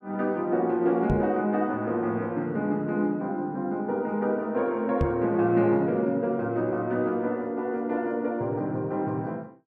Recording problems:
knock on the microphone; at 1 s and at 5 s; peak +3 dB vs average level

